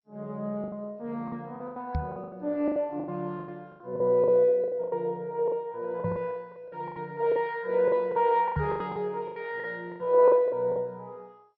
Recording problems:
codec artefacts; MP2, log-spectral distance 2 dB, nothing above 4.6 kHz
packet loss; 16% of the sound replaced, filled with the last packet
knock on the microphone; at 2 s, at 6 s and at 8.5 s; peak +2 dB vs average level

